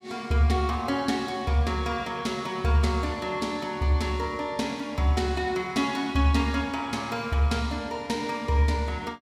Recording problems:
none

